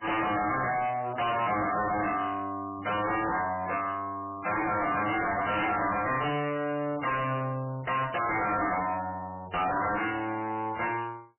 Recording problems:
lossy compression; MP3, log-spectral distance 7 dB, nothing above 3 kHz
distortion; hard clipping, signal-to-distortion ratio 5 dB

